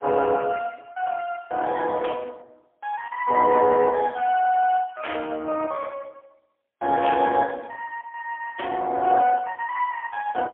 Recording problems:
phone line; 280 Hz to 3.3 kHz, AMR-NB, then MP3
burst of static; 4 times, first at 2 s; peak -4 dB vs average level

